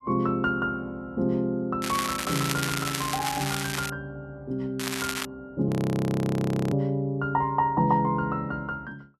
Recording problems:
crackle; from 2 to 4 s and at 5 s; loose cable, SNR 4 dB
audio freezing; at 5.5 s for 1 s

